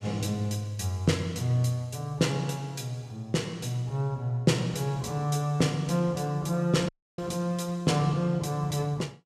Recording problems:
audio cutting out; at 7 s

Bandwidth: 14.5 kHz